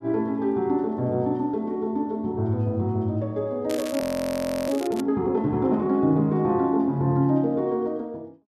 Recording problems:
crackling; from 3.5 to 5 s; loose cable, SNR 14 dB
audio freezing; at 4 s for 0.5 s

